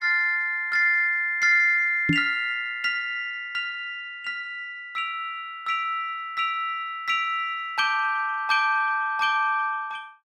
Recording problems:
microphone thump; at 2 s; peak +4 dB vs average level

